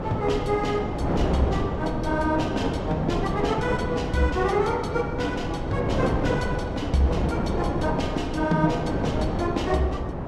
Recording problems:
hum; 50 Hz, harmonics up to 450 Hz, SNR 20 dB
wind on the microphone; below 530 Hz, SNR 2 dB

